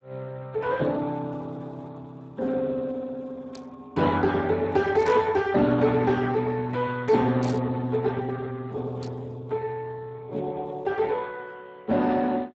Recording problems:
lossy compression; Speex, log-spectral distance 3 dB, nothing above 7.6 kHz
burst of static; 4 times, first at 3.5 s; peak -11 dB vs average level

